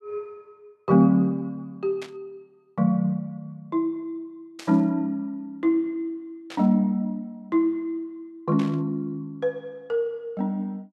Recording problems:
burst of static; 4 times, first at 2 s; peak -10 dB vs average level

